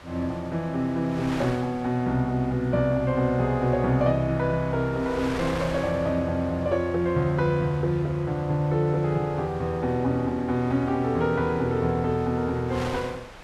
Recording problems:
wind noise; below 2.3 kHz, SNR 16 dB

